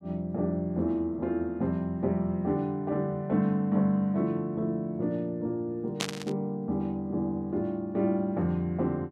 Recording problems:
static burst; at 6 s; peak +4 dB vs average level

